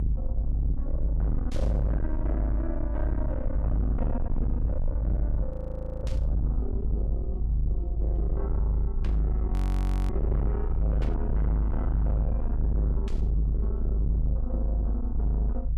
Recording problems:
distorted audio; soft clipping, signal-to-distortion ratio 7 dB
rumble; below 58 Hz, strongest tone 52 Hz, SNR -8 dB
static burst; 5 times, first at 1.5 s; peak -4 dB vs average level
frozen audio; at 5.5 s for 0.5 s and at 9.5 s for 0.5 s

